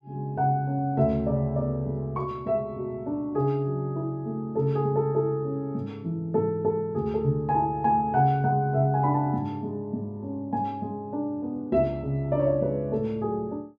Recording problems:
none

